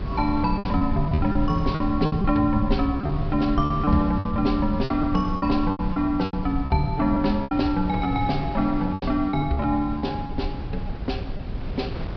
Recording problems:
treble missing; nothing above 5.5 kHz
low-frequency rumble; below 100 Hz, SNR 7 dB
wind noise; below 750 Hz, SNR 14 dB
packet loss; 11% of the sound replaced, filled with repeated pitch periods

